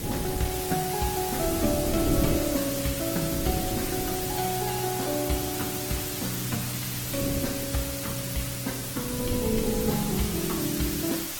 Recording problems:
codec artefacts; Opus, log-spectral distance 9 dB, nothing above 15.5 kHz
background hiss; slope +1 dB per octave, SNR 2 dB
wind on the microphone; below 300 Hz, SNR 5 dB

